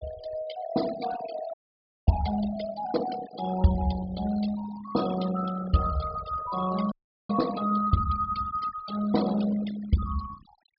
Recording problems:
treble missing; nothing above 5.1 kHz
denoising artefacts; signal-to-artefact ratio 12 dB
audio freezing; at 1.5 s for 0.5 s and at 7 s

